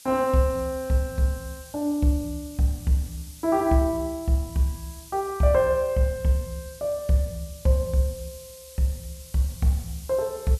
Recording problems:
background hiss; SNR 19 dB

